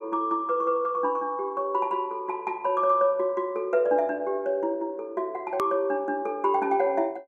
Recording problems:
hard cut with a click; at 5.5 s

